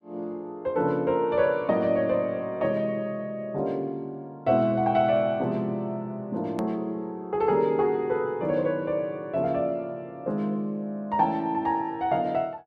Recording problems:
click at an edit; at 6.5 s

